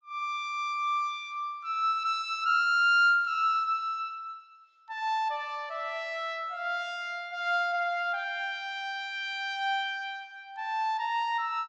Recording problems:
treble cut off; nothing above 8 kHz

